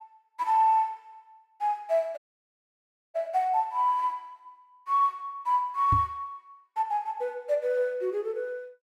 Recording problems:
dropout; at 2 s for 1 s
knock on the microphone; at 6 s; peak +2 dB vs average level

